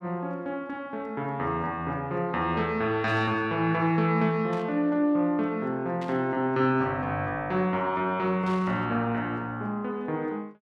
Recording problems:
static burst; 4 times, first at 3 s; peak -12 dB vs average level

